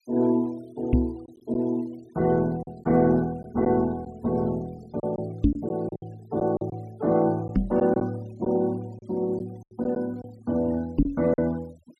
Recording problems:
denoising artefacts; signal-to-artefact ratio 27 dB
lost packets; 6% of the sound replaced, filled with silence
microphone bump; 4 times, first at 1 s; peak +9 dB vs average level

